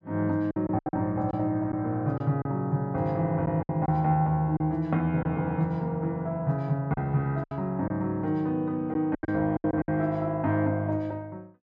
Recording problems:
lost packets; 7% of the sound replaced, filled with silence

